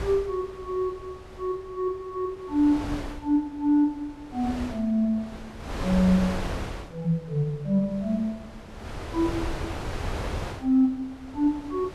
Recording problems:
wind on the microphone; below 820 Hz, SNR 9 dB

